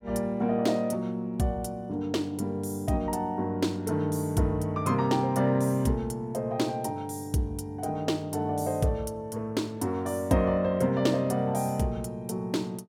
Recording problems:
none

